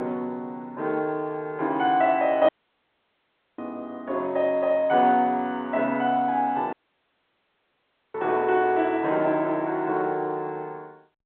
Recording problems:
phone line; 260 Hz to 3.8 kHz, G.711
audio cutting out; at 2.5 s for 1 s and at 7 s for 1.5 s

